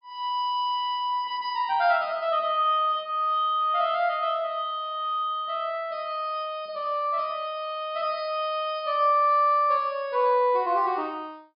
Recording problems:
treble cut off; nothing above 5.5 kHz

